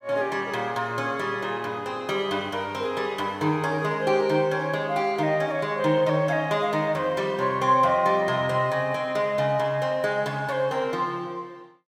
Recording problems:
none

